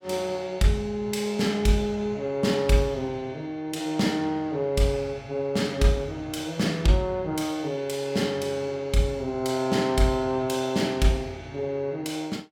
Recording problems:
none

